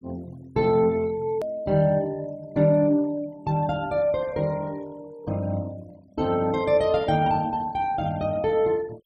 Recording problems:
denoising artefacts; signal-to-artefact ratio 26 dB
hard cut with a click; at 1.5 s

